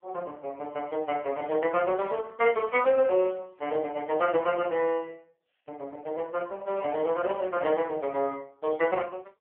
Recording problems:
phone line; 280 Hz to 3.2 kHz, AMR-NB

